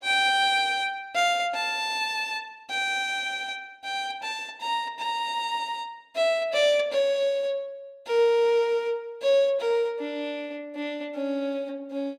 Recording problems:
none

